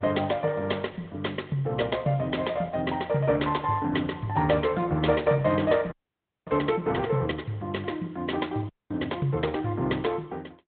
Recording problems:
treble cut off; nothing above 3.7 kHz
lossy compression; Opus, log-spectral distance 3 dB
frozen audio; at 6 s for 0.5 s and at 8.5 s

